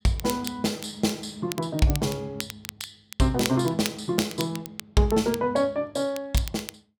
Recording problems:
crackle; vinyl, SNR 11 dB

